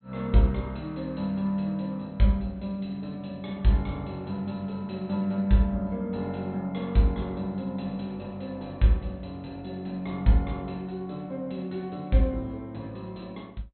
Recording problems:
treble missing; nothing above 4.1 kHz

